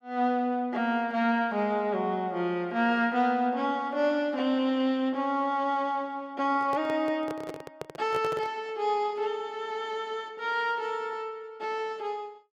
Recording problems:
handling noise; from 6.5 to 8.5 s; peak -4 dB vs average level

